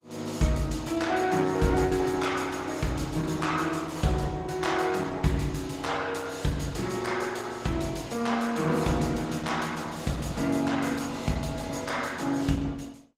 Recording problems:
lossy codec; Opus, log-spectral distance 4 dB, nothing above 18.9 kHz

